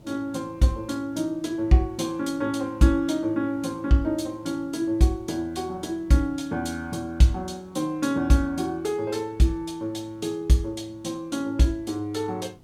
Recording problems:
background hiss; SNR 27 dB

